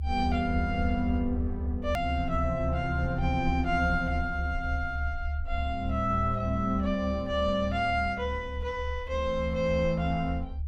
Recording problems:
low-frequency rumble; below 74 Hz, strongest tone 70 Hz, SNR 5 dB
edit click; at 2 s

